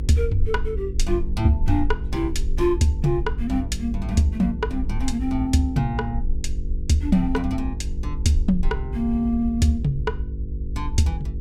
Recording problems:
hum; 50 Hz, harmonics up to 500 Hz, SNR 11 dB
low-frequency rumble; below 64 Hz, SNR 7 dB

